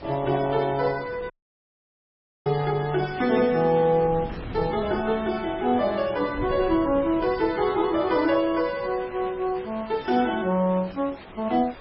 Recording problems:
codec artefacts; MP3, then MP3, log-spectral distance 5 dB, nothing above 4.8 kHz
background hiss; SNR 20 dB
wind on the microphone; below 380 Hz, SNR 18 dB
dropout; at 1.5 s for 1 s

